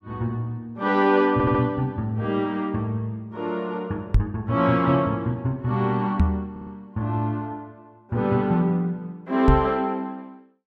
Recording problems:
stutter; at 1.5 s and at 6.5 s
microphone thump; at 4 s, at 6 s and at 9.5 s; peak +9 dB vs average level

